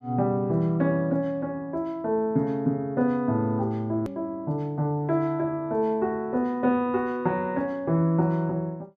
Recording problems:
hard cut with a click; at 4 s

